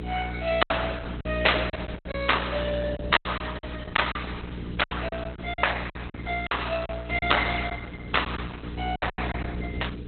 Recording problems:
lossy codec; Opus, log-spectral distance 9 dB, nothing above 4 kHz
electrical hum; 60 Hz, harmonics up to 480 Hz, SNR 8 dB
hiss; SNR 27 dB
lost packets; 10% of the sound replaced, filled with silence

